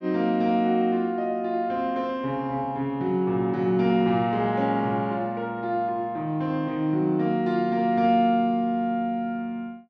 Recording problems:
none

